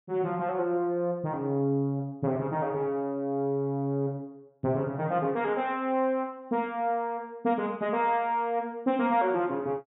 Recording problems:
treble cut off; nothing above 4 kHz

